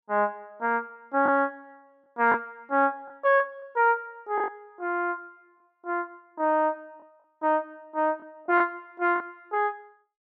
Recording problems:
lost packets; 4% of the sound replaced, filled with the last packet

